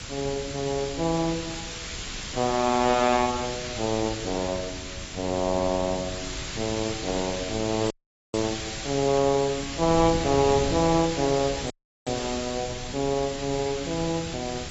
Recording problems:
lossy codec; AAC, log-spectral distance 18 dB, nothing above 7.3 kHz
hiss; slope +1 dB per octave, SNR 8 dB
wind on the microphone; below 200 Hz, SNR 15 dB
audio cutting out; at 8 s and at 12 s

